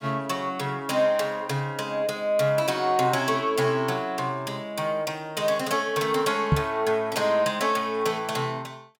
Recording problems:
knock on the microphone; at 6.5 s; peak +8 dB vs average level

